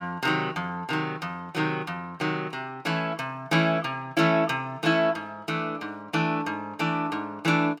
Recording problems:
none

